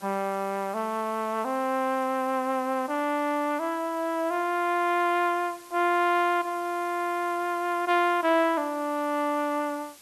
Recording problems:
background hiss; slope 0 dB per octave, SNR 22 dB

